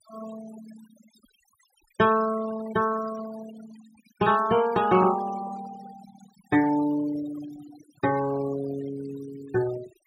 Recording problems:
denoising artefacts; signal-to-artefact ratio 16 dB

